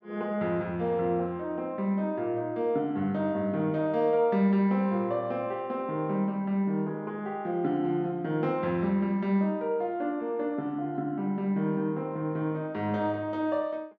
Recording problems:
none

